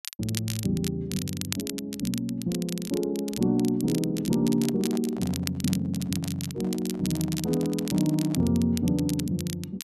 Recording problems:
crackling; vinyl, SNR 10 dB
microphone handling noise; from 4.5 to 8.5 s; peak -10 dB vs average level

